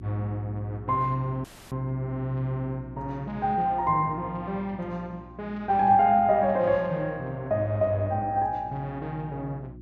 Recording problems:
electrical hum; 60 Hz, harmonics up to 360 Hz, SNR 18 dB
audio cutting out; at 1.5 s

